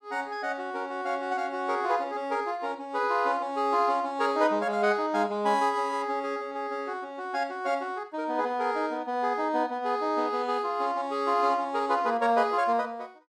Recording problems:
none

